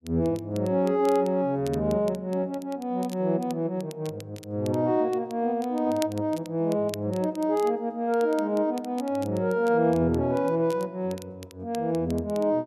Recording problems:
crackle; vinyl, SNR 22 dB

